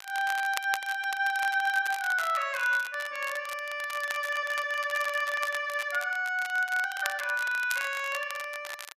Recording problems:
crackle; vinyl, SNR 12 dB
stutter; at 4 s

